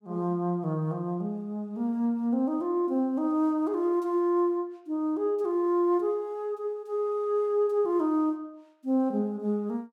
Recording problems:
none

